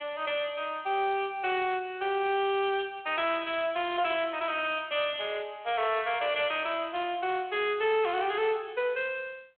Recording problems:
telephone audio; 340 Hz to 3.4 kHz, G.726
distortion; hard clipping, uneven, signal-to-distortion ratio 11 dB

